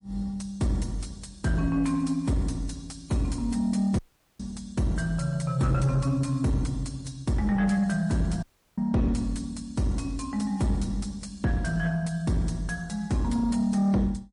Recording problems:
codec artefacts; MP3, log-spectral distance 2 dB, nothing above 10.1 kHz
distortion; soft clipping, signal-to-distortion ratio 12 dB
audio cutting out; at 4 s and at 8.5 s

